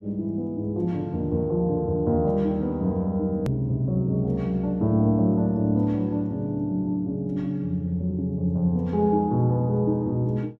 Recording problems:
edit click; at 3.5 s

